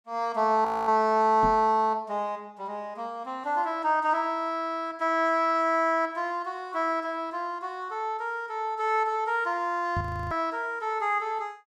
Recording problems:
audio freezing; at 0.5 s and at 10 s
microphone thump; at 1.5 s and at 10 s; peak -2 dB vs average level

